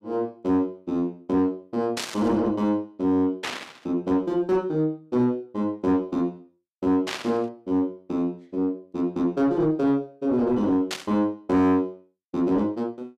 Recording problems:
distorted audio; soft clipping, signal-to-distortion ratio 10 dB
static burst; 4 times, first at 2 s; peak -1 dB vs average level

